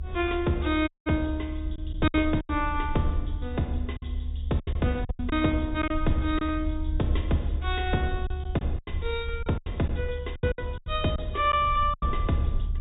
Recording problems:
treble missing; nothing above 4 kHz
low-frequency rumble; below 74 Hz, SNR 5 dB
lost packets; 9% of the sound replaced, filled with silence
audio cutting out; at 1 s

